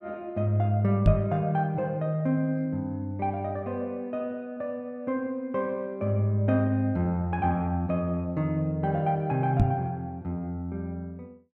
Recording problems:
knock on the microphone; at 1 s and at 9.5 s; peak +9 dB vs average level

